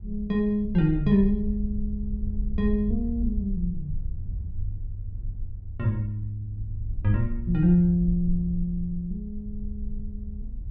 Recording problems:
wind on the microphone; below 64 Hz, SNR 8 dB

